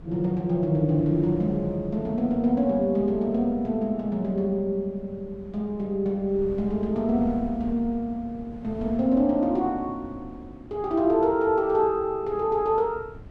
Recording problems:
wind noise; below 230 Hz, SNR 18 dB

